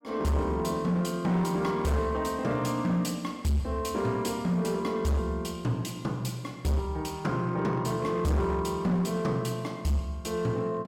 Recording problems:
distortion; hard clipping, signal-to-distortion ratio 11 dB

